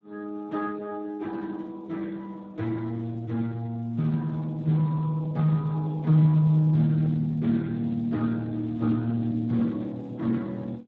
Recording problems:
lossy codec; Speex, log-spectral distance 2 dB

